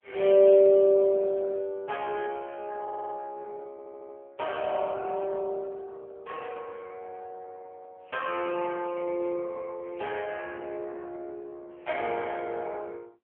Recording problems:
phone line; 300 Hz to 2.2 kHz, AMR-NB
audio stuttering; at 3 s and at 3.5 s

